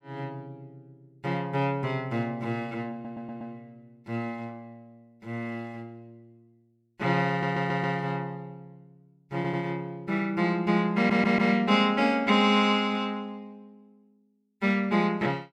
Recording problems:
stutter; 4 times, first at 3 s

